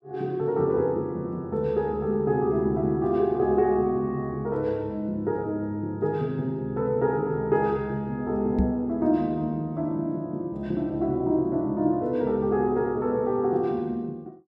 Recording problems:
knock on the microphone; at 8.5 s; peak +6 dB vs average level

